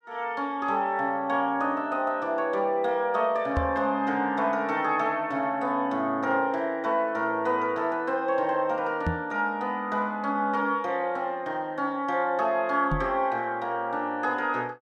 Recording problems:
knock on the microphone; at 3.5 s, at 9 s and at 13 s; peak +1 dB vs average level

